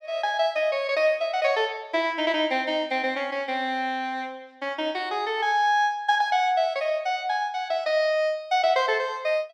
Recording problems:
none

